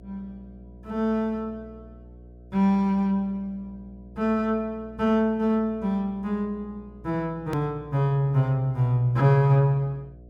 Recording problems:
electrical hum; 60 Hz, harmonics up to 720 Hz, SNR 23 dB
click at an edit; at 7.5 s

